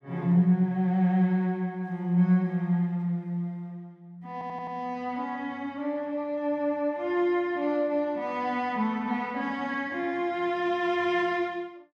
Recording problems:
stutter; at 4.5 s

